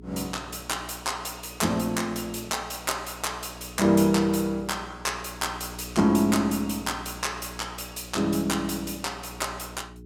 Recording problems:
electrical hum; 60 Hz, harmonics up to 420 Hz, SNR 17 dB

